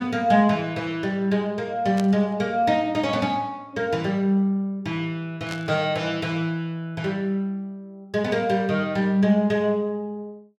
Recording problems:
static burst; at 2 s and at 5.5 s; peak -7 dB vs average level

